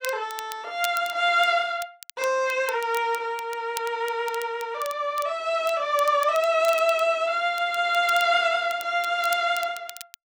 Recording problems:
crackling; vinyl, SNR 17 dB

